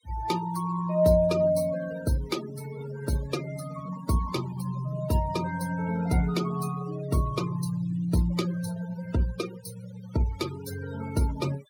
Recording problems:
denoising artefacts; signal-to-artefact ratio 15 dB

